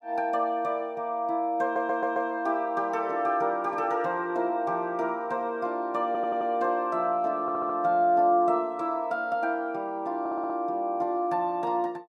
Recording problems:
stutter; 4 times, first at 1.5 s

